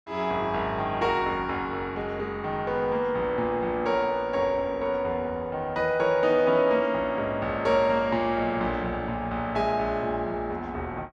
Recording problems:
none

